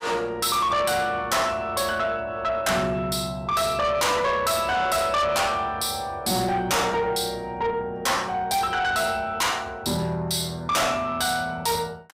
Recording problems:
distortion; soft clipping, signal-to-distortion ratio 6 dB

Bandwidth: 15.5 kHz